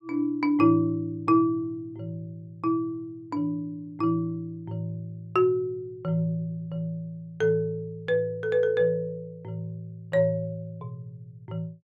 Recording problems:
none

